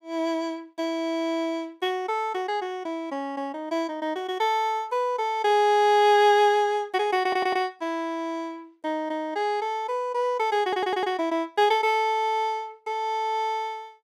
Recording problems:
audio stuttering; at 7 s and at 11 s

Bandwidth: 15.5 kHz